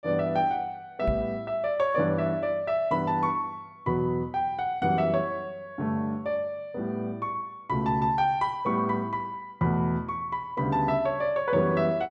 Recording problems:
microphone bump; at 1 s; peak +1 dB vs average level

